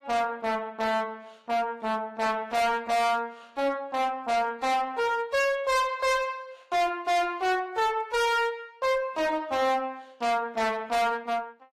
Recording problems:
lossy codec; AAC, log-spectral distance 2 dB, nothing above 14.6 kHz
distortion; hard clipping, signal-to-distortion ratio 6 dB

